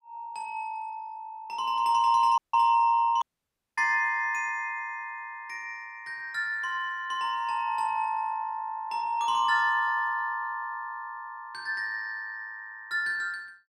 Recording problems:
audio cutting out; at 2.5 s and at 3 s for 0.5 s

